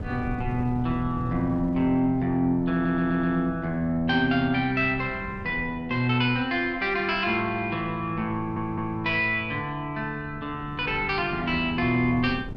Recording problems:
wind on the microphone; below 190 Hz, SNR 16 dB
audio stuttering; at 2.5 s and at 8.5 s

